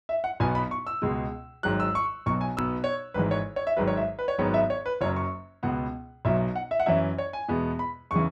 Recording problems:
click at an edit; at 2.5 s

